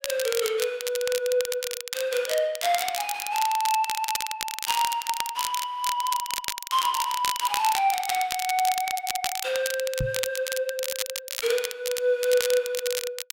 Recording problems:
crackling; vinyl, SNR 5 dB
microphone bump; at 10 s; peak +1 dB vs average level

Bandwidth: 16 kHz